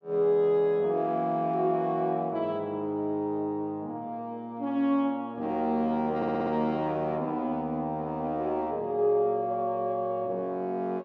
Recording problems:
stutter; at 6 s

